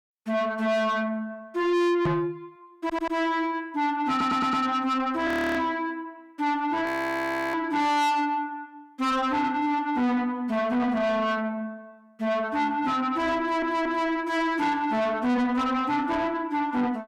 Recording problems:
distorted audio; soft clipping, signal-to-distortion ratio 6 dB
microphone bump; at 2 s; peak +5 dB vs average level
stutter; at 3 s, at 4 s and at 13 s
audio freezing; at 5.5 s and at 7 s for 0.5 s

